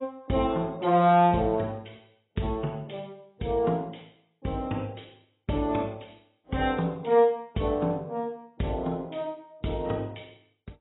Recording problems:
lossy codec; AAC, log-spectral distance 4 dB, nothing above 3.9 kHz

